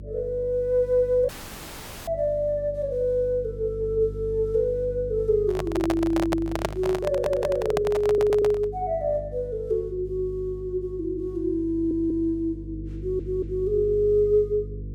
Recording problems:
hum; 50 Hz, harmonics up to 500 Hz, SNR 13 dB
audio cutting out; at 1.5 s for 1 s
microphone handling noise; from 5.5 to 8.5 s; peak +3 dB vs average level
audio stuttering; 4 times, first at 7 s

